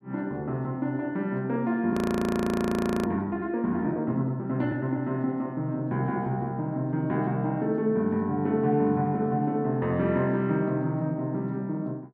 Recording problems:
frozen audio; at 2 s for 1 s

